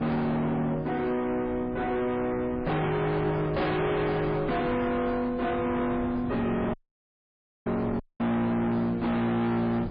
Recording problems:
codec artefacts; MP3, log-spectral distance 2 dB, nothing above 4.4 kHz
distortion; hard clipping, signal-to-distortion ratio 6 dB
wind on the microphone; below 410 Hz, SNR 13 dB
dropout; at 6.5 s for 1 s and at 8 s

